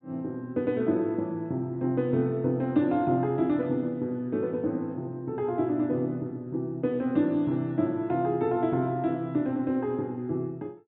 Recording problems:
treble cut off; nothing above 4 kHz

